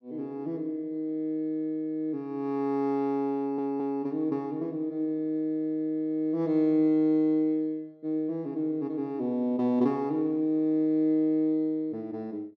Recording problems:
audio stuttering; at 3.5 s

